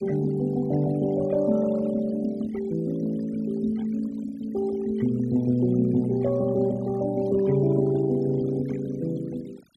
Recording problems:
denoising artefacts; signal-to-artefact ratio 22 dB

